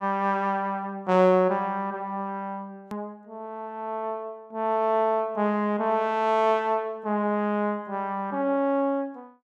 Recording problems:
click at an edit; at 3 s

